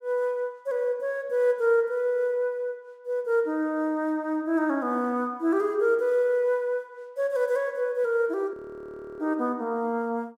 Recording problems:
audio freezing; at 8.5 s for 0.5 s

